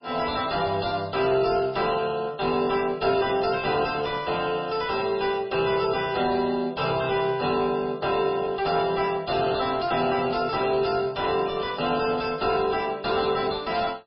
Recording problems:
codec artefacts; MP3, log-spectral distance 4 dB, nothing above 4.6 kHz
distortion; soft clipping, signal-to-distortion ratio 9 dB

